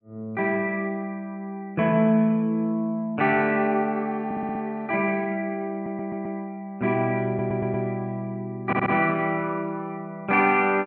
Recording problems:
stutter; 4 times, first at 4.5 s

